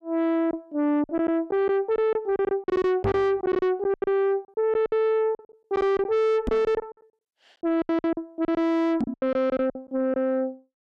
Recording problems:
distorted audio; soft clipping, signal-to-distortion ratio 7 dB
lost packets; 14% of the sound replaced, filled with silence
knock on the microphone; at 3 s, at 6.5 s and at 9 s; peak +3 dB vs average level

